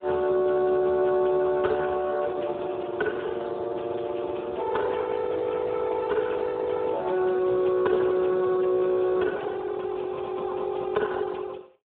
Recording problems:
telephone audio; 320 Hz to 2.9 kHz, Speex

